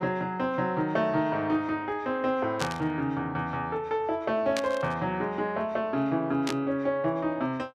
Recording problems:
static burst; at 2.5 s, at 4.5 s and at 6.5 s; peak 0 dB vs average level

